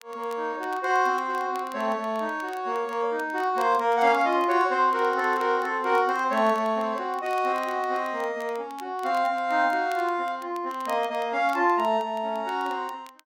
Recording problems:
crackling; vinyl, SNR 25 dB

